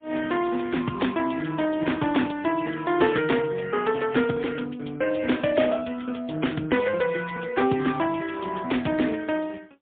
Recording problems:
telephone audio; 170 Hz to 3.5 kHz, AMR-NB, then MP3

